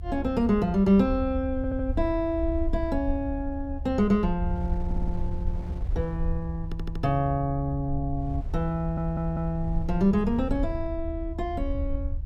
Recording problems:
rumble; below 72 Hz, SNR 7 dB
wind on the microphone; below 170 Hz, SNR 19 dB
audio stuttering; 4 times, first at 1.5 s

